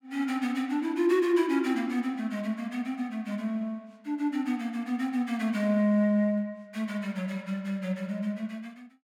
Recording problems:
none

